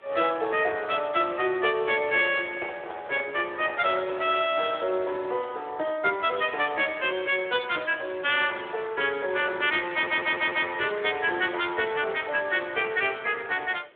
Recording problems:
telephone audio; 320 Hz to 3.5 kHz, Speex
background hiss; SNR 26 dB
microphone handling noise; from 2 to 3.5 s; peak -9 dB vs average level
stutter; at 10 s

